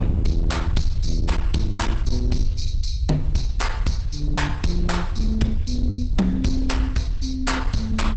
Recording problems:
lossy codec; Opus, log-spectral distance 3 dB, nothing above 8 kHz
distortion; hard clipping, signal-to-distortion ratio 11 dB
rumble; below 72 Hz, SNR 0 dB
lost packets; 2% of the sound replaced, filled with the last packet

